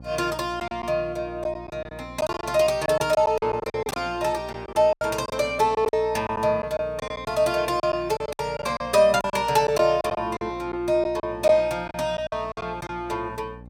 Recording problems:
hum; 60 Hz, harmonics up to 840 Hz, SNR 20 dB
packet loss; 11% of the sound replaced, filled with silence

